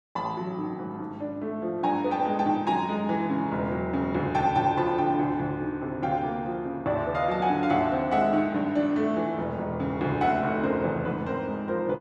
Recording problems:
none

